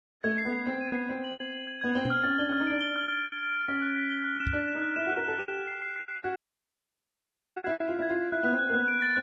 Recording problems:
lossy compression; Vorbis, log-spectral distance 2 dB
packet loss; 10% of the sound replaced, filled with repeated pitch periods
microphone bump; at 2 s and at 4.5 s; peak +1 dB vs average level
dropout; at 6.5 s for 1 s

